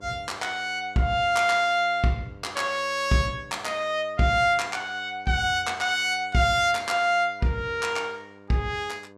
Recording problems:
hum; 50 Hz, harmonics up to 1.6 kHz, SNR 25 dB

